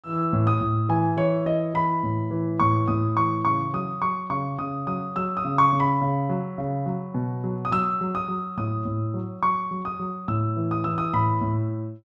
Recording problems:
none

